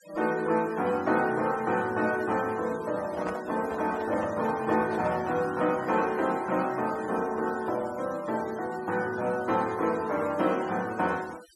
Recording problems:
noise reduction artefacts; signal-to-artefact ratio 20 dB
handling noise; from 3 to 5.5 s; peak -3 dB vs average level

